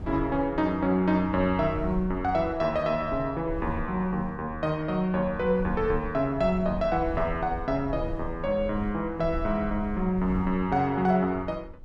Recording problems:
wind on the microphone; below 80 Hz, SNR 13 dB

